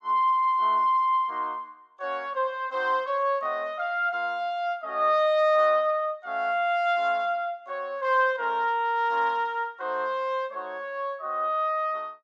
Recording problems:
none

